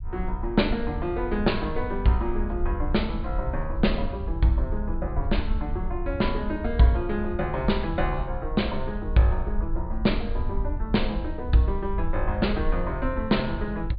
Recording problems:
treble cut off; nothing above 4.6 kHz
low-frequency rumble; below 64 Hz, SNR 5 dB

